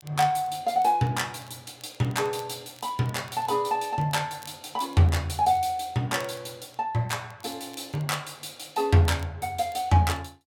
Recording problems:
crackle; vinyl, SNR 28 dB

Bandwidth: 17 kHz